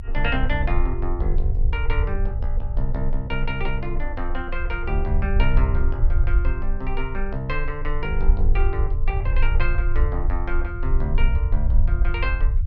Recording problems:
rumble; below 54 Hz, strongest tone 20 Hz, SNR -4 dB

